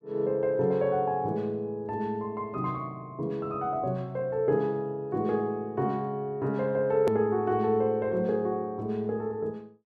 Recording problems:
edit click; at 7 s

